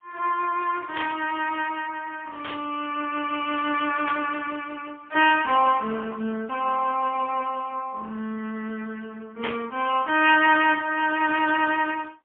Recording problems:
phone line; 260 Hz to 3.4 kHz, AMR-NB, then MP3
static burst; 4 times, first at 1 s; peak -3 dB vs average level

